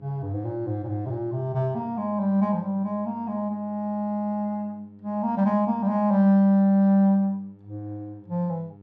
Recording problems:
hum; 50 Hz, harmonics up to 900 Hz, SNR 26 dB

